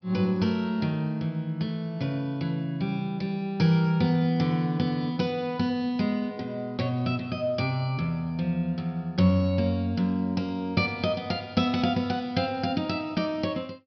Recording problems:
treble missing; nothing above 5.5 kHz

